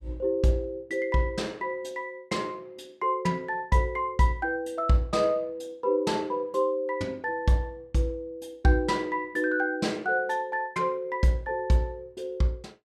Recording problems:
none

